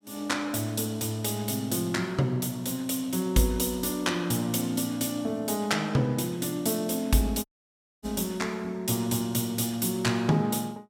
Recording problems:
dropout; at 7.5 s for 0.5 s

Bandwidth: 16.5 kHz